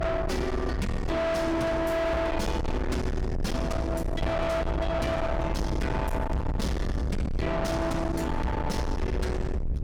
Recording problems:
distortion; soft clipping, signal-to-distortion ratio 5 dB
low-frequency rumble; below 530 Hz, SNR 2 dB
wind on the microphone; below 530 Hz, SNR 9 dB

